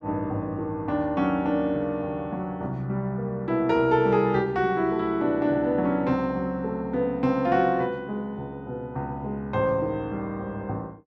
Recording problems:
none

